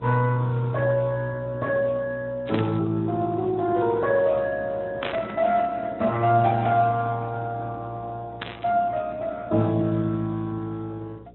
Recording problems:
treble cut off; nothing above 3.9 kHz
lossy codec; Speex, log-spectral distance 3 dB
electrical hum; 60 Hz, harmonics up to 600 Hz, SNR 23 dB
burst of static; at 2.5 s, at 5 s and at 8.5 s; peak -2 dB vs average level

